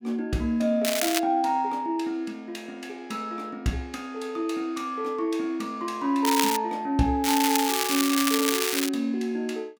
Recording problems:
crackling; at 1 s, at 6.5 s and from 7 to 9 s; loose cable, SNR 0 dB

